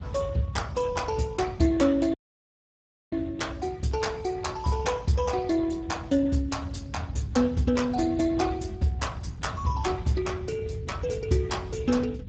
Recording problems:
codec artefacts; Speex, log-spectral distance 3 dB, nothing above 7.6 kHz
rumble; below 140 Hz, SNR 10 dB
dropout; at 2 s for 1 s

